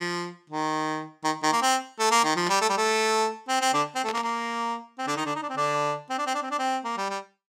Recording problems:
static burst; at 2.5 s and at 4 s; peak -4 dB vs average level

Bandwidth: 16.5 kHz